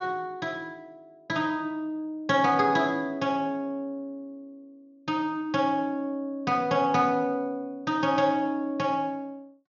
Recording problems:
treble missing; nothing above 7 kHz

